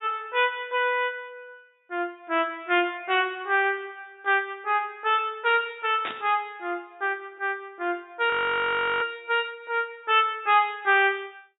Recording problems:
low-pass filter; nothing above 4 kHz
burst of static; at 6 s; peak -4 dB vs average level
audio freezing; at 8.5 s for 0.5 s

